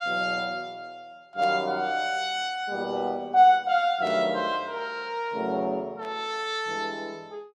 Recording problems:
static burst; at 1.5 s, at 4 s and at 6 s; peak -15 dB vs average level

